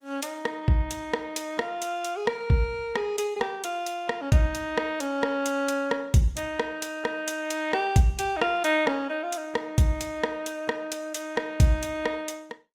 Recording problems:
lossy codec; Opus, log-spectral distance 3 dB, nothing above 18.5 kHz

